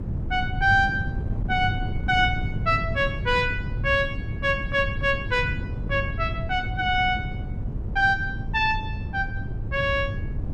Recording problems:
wind noise; below 140 Hz, SNR 6 dB

